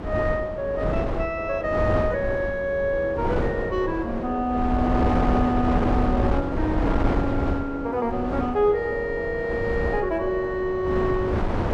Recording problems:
wind noise; below 510 Hz, SNR 3 dB

